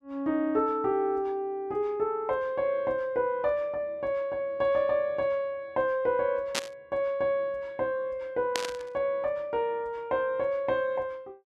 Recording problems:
burst of static; at 6.5 s and at 8.5 s; peak +4 dB vs average level

